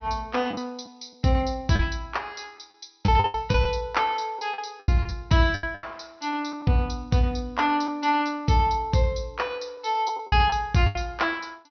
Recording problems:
treble cut off; nothing above 6.1 kHz
lost packets; 7% of the sound replaced, filled with the last packet

